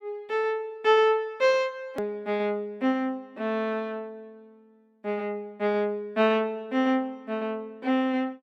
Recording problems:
click at an edit; at 2 s

